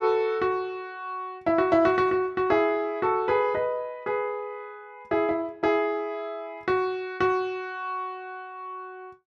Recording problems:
none

